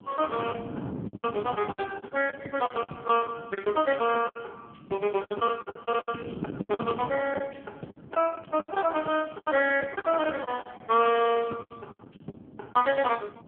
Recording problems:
telephone audio; 190 Hz to 3.3 kHz, AMR-NB
wind noise; below 360 Hz, SNR 15 dB
packet loss; 14% of the sound replaced, filled with the last packet

